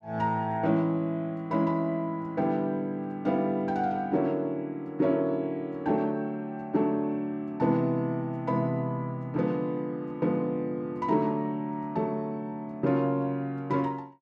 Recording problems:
none

